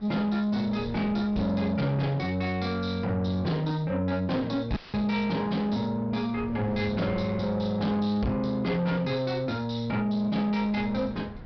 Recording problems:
low-pass filter; nothing above 5.5 kHz
distorted audio; soft clipping, signal-to-distortion ratio 10 dB
wind on the microphone; below 370 Hz, SNR 19 dB
dropout; at 5 s

